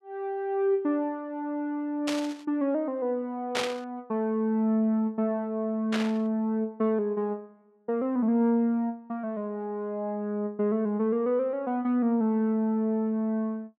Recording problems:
static burst; at 2 s, at 3.5 s and at 6 s; peak +2 dB vs average level

